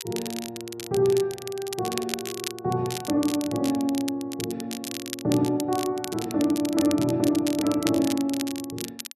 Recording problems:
crackling; vinyl, SNR 10 dB

